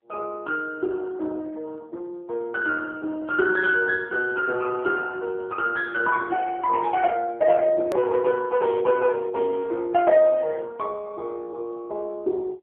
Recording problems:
telephone audio; 280 Hz to 2.2 kHz, AMR-NB
edit click; at 8 s

